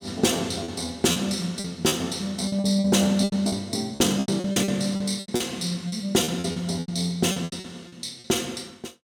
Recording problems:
lost packets; 15% of the sound replaced, filled with repeated pitch periods

